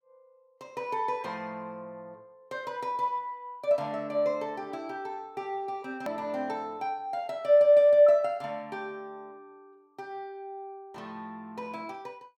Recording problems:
edit click; at 6 s

